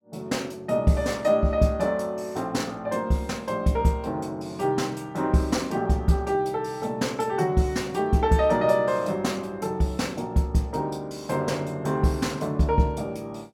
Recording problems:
none

